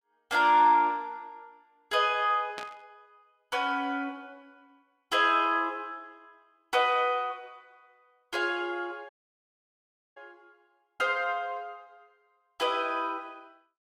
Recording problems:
burst of static; at 2.5 s; peak -8 dB vs average level
audio cutting out; at 9 s for 1 s

